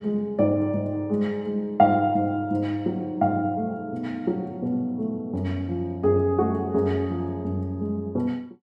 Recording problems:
none

